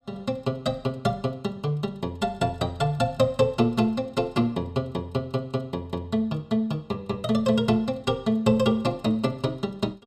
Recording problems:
none

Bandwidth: 15.5 kHz